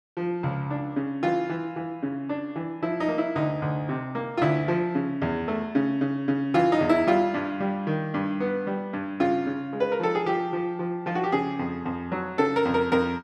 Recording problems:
none

